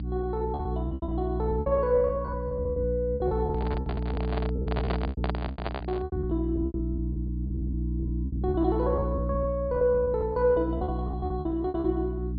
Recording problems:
treble cut off; nothing above 4.8 kHz
hum; 60 Hz, harmonics up to 300 Hz, SNR 3 dB
packet loss; 19% of the sound replaced, filled with repeated pitch periods
microphone handling noise; from 3.5 to 6 s; peak +2 dB vs average level

